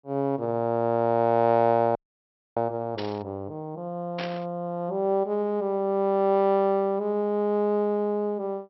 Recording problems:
treble missing; nothing above 5.6 kHz
frozen audio; at 2 s for 0.5 s
static burst; at 3 s and at 4 s; peak -6 dB vs average level

